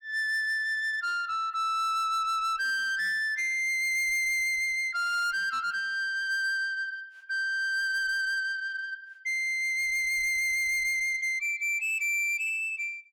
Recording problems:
distortion; soft clipping, signal-to-distortion ratio 11 dB

